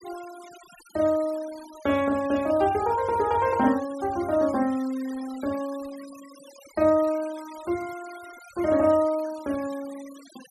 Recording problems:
noise reduction artefacts; signal-to-artefact ratio 20 dB

